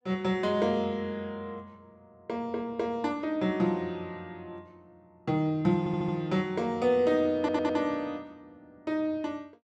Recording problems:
stutter; at 6 s and at 7.5 s

